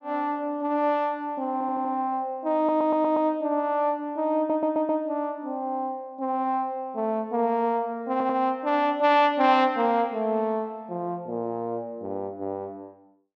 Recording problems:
audio stuttering; 4 times, first at 1.5 s

